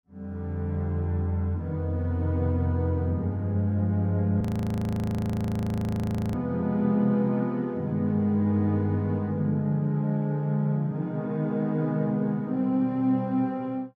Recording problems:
frozen audio; at 4.5 s for 2 s

